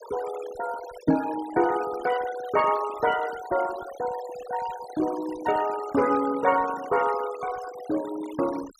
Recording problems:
denoising artefacts; signal-to-artefact ratio 14 dB
microphone thump; at 1 s; peak +9 dB vs average level

